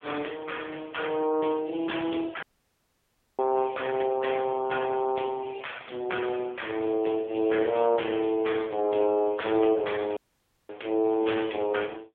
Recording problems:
phone line; 260 Hz to 3.4 kHz, AMR-NB
dropout; at 2.5 s for 1 s and at 10 s for 0.5 s

